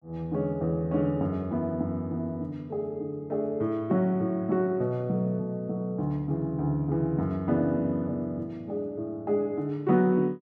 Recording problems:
none

